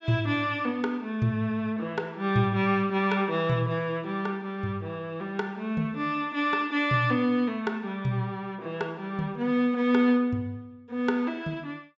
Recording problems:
treble missing; nothing above 8 kHz

